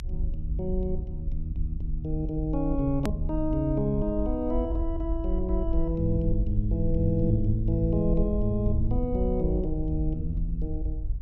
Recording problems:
low-frequency rumble; below 58 Hz, SNR 3 dB
hard cut with a click; at 3 s

